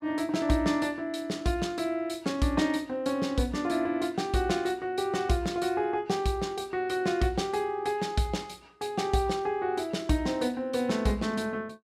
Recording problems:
none

